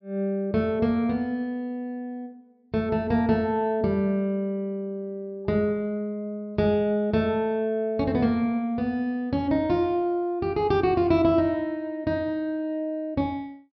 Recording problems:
treble cut off; nothing above 5.5 kHz

